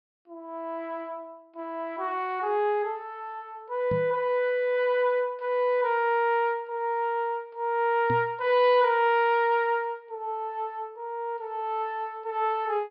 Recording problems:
low-pass filter; nothing above 5.3 kHz
microphone thump; at 4 s and at 8 s; peak -2 dB vs average level

